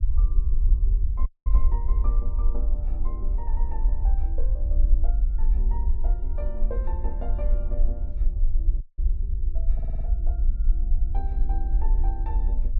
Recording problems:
low-frequency rumble; below 48 Hz, SNR -16 dB
dropout; at 1.5 s and at 9 s
audio stuttering; at 9.5 s

